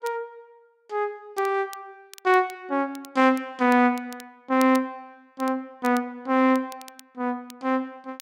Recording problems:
crackling; vinyl, SNR 23 dB

